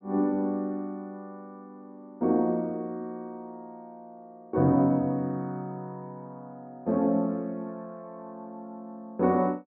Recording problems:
none

